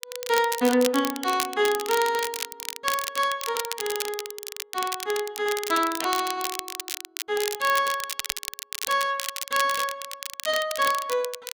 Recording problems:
crackle; vinyl, SNR 6 dB

